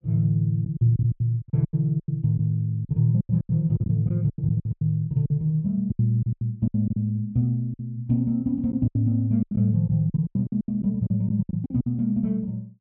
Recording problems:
lost packets; 15% of the sound replaced, filled with silence

